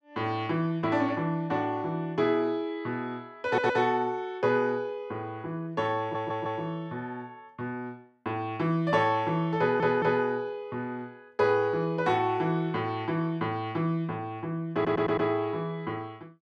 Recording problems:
audio stuttering; 4 times, first at 3.5 s

